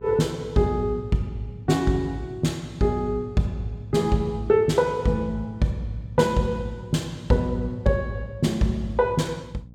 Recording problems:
hum; 60 Hz, harmonics up to 540 Hz, SNR 20 dB

